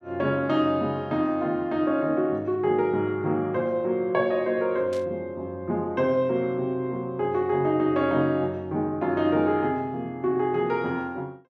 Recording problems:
burst of static; at 5 s; peak -13 dB vs average level

